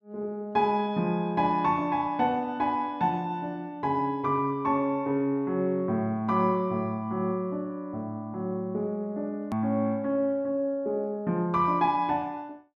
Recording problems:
hard cut with a click; at 9.5 s

